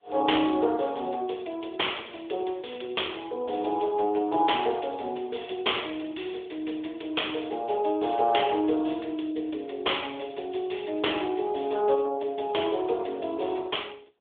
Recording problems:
telephone audio; 340 Hz to 3.6 kHz, AMR-NB

